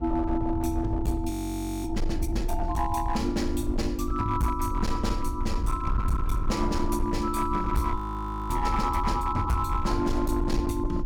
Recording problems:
distortion; hard clipping, signal-to-distortion ratio 12 dB
low-frequency rumble; below 76 Hz, SNR 4 dB
audio freezing; at 1.5 s for 0.5 s and at 8 s for 0.5 s

